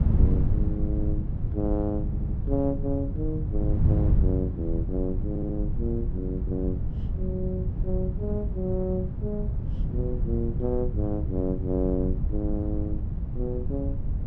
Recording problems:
wind on the microphone; below 120 Hz, SNR -3 dB
stutter; at 2 s and at 5.5 s

